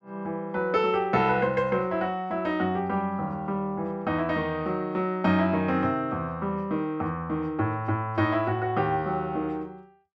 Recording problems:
none

